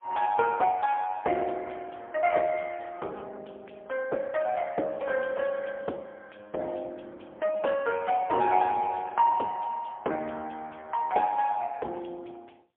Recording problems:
telephone audio; 320 Hz to 2.8 kHz, AMR-NB, then MP3

